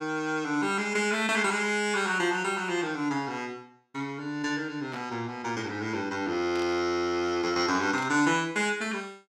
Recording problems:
static burst; at 5 s, at 6.5 s and at 8 s; peak -10 dB vs average level

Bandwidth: 16.5 kHz